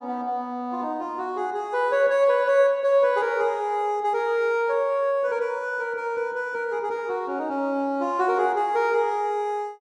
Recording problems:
none

